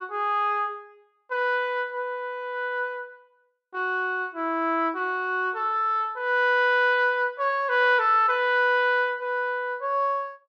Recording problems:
none

